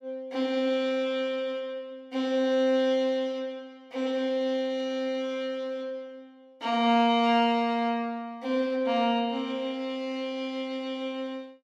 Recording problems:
none

